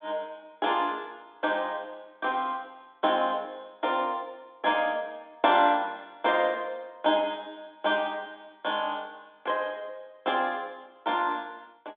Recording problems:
phone line; 220 Hz to 3.7 kHz, G.726

